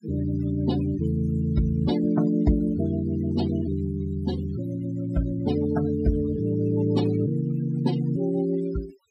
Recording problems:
denoising artefacts; signal-to-artefact ratio 17 dB

